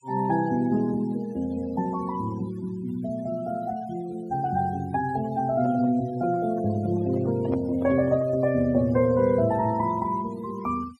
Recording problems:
noise reduction artefacts; signal-to-artefact ratio 22 dB
handling noise; from 5.5 to 8.5 s; peak -5 dB vs average level

